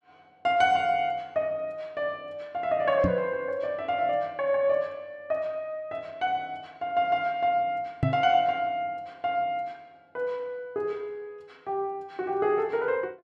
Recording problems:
microphone bump; at 3 s and at 8 s; peak +6 dB vs average level

